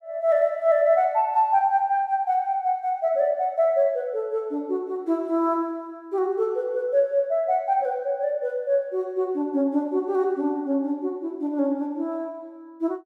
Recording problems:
none

